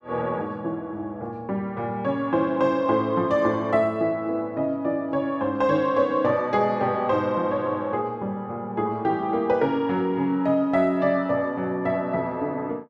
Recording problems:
none

